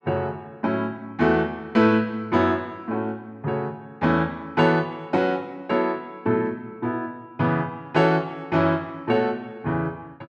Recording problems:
none

